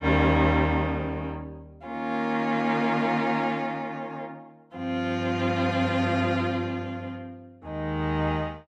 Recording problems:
none

